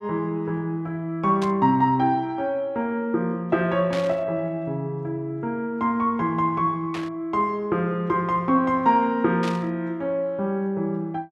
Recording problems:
burst of static; 4 times, first at 1.5 s; peak -6 dB vs average level

